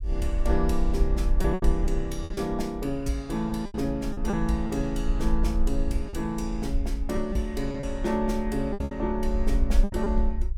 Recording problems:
low-frequency rumble; below 50 Hz, strongest tone 20 Hz, SNR 2 dB
lost packets; 7% of the sound replaced, filled with repeated pitch periods

